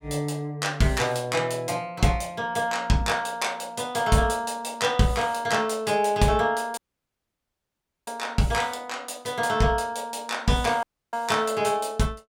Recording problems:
audio cutting out; at 7 s for 1.5 s and at 11 s

